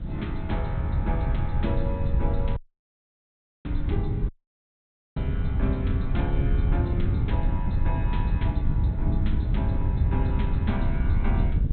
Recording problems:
low-pass filter; nothing above 4 kHz
hiss; SNR 27 dB
low-frequency rumble; below 130 Hz, SNR 8 dB
wind on the microphone; below 110 Hz, SNR -6 dB
dropout; at 2.5 s for 1 s and at 4.5 s for 1 s

